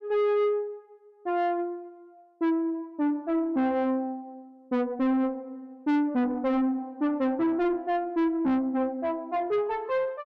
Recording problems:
distorted audio; soft clipping, signal-to-distortion ratio 8 dB

